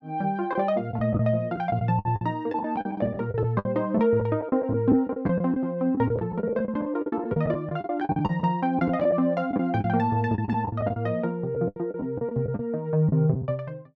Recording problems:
lost packets; 14% of the sound replaced, filled with the last packet

